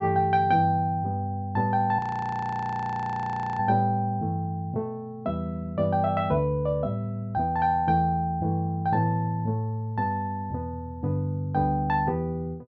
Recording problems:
treble cut off; nothing above 7.7 kHz
frozen audio; at 2 s for 1.5 s

